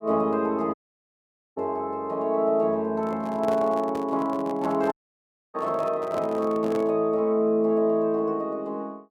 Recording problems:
audio cutting out; at 0.5 s for 1 s and at 5 s for 0.5 s
handling noise; from 3 to 7 s; peak -6 dB vs average level

